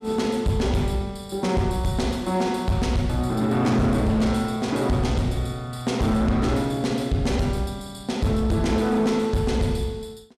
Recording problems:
distorted audio; hard clipping, signal-to-distortion ratio 11 dB

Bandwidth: 14.5 kHz